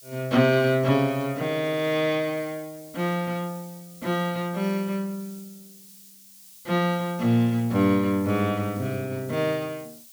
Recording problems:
background hiss; SNR 21 dB

